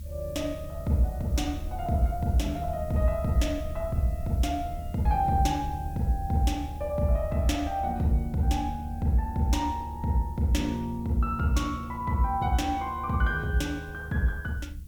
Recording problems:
background hiss; slope +2 dB per octave, SNR 27 dB
rumble; below 78 Hz, strongest tone 74 Hz, SNR 10 dB

